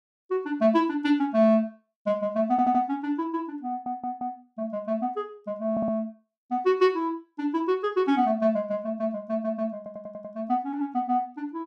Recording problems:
stutter; 4 times, first at 2.5 s

